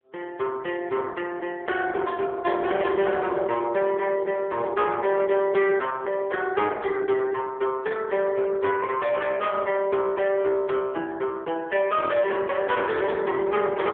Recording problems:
phone line; 280 Hz to 3.5 kHz, AMR-NB
distortion; hard clipping, signal-to-distortion ratio 12 dB

